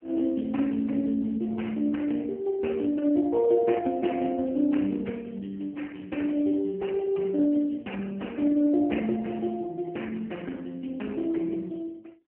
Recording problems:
telephone audio; 190 Hz to 3.1 kHz, AMR-NB

